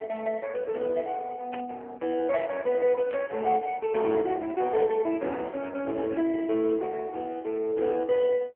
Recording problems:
telephone audio; 320 Hz to 3.3 kHz, AMR-NB
static burst; at 1.5 s and at 3 s; peak -10 dB vs average level

